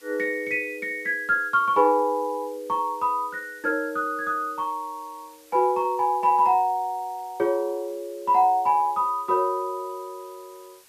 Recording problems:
background hiss; slope 0 dB per octave, SNR 27 dB

